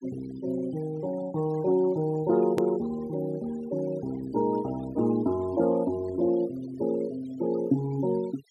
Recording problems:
noise reduction artefacts; signal-to-artefact ratio 19 dB
hard cut with a click; at 2.5 s

